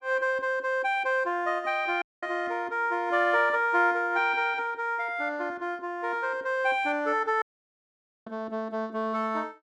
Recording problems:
audio cutting out; at 2 s and at 7.5 s for 1 s

